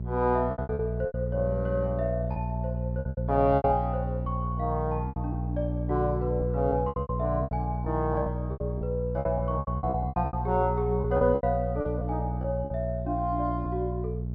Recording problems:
low-pass filter; nothing above 5.5 kHz
hum; 60 Hz, harmonics up to 420 Hz, SNR 2 dB
lost packets; 13% of the sound replaced, filled with repeated pitch periods

